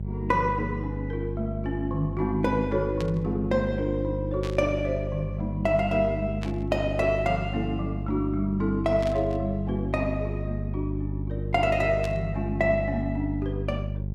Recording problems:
mains hum; 50 Hz, harmonics up to 400 Hz, SNR 5 dB
static burst; 5 times, first at 3 s; peak -7 dB vs average level

